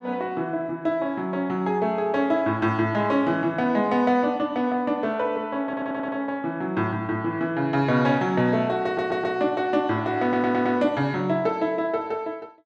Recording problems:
audio stuttering; at 5.5 s, at 9 s and at 10 s

